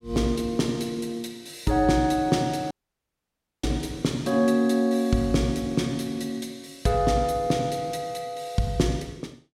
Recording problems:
dropout; at 2.5 s for 1 s

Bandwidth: 16 kHz